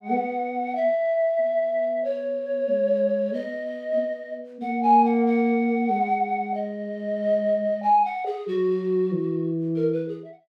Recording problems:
none

